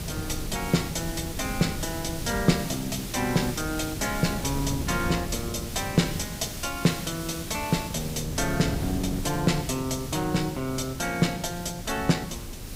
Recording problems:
hiss; SNR 11 dB
wind noise; below 210 Hz, SNR 9 dB

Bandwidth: 15.5 kHz